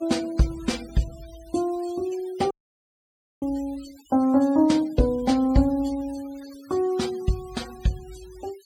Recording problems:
noise reduction artefacts; signal-to-artefact ratio 21 dB
dropout; at 2.5 s for 1 s

